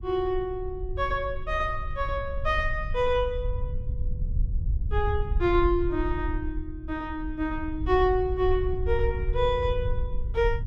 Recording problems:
low-frequency rumble; below 70 Hz, SNR 5 dB

